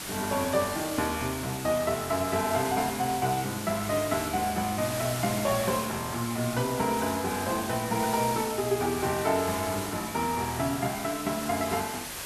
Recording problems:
hiss; slope -1 dB per octave, SNR 7 dB

